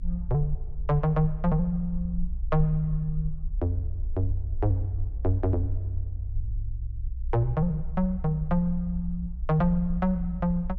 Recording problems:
low-frequency rumble; below 60 Hz, SNR 7 dB

